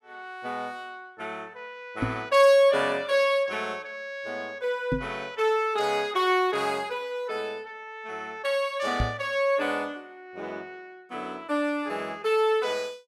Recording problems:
knock on the microphone; at 2 s, at 5 s and at 9 s; peak +2 dB vs average level

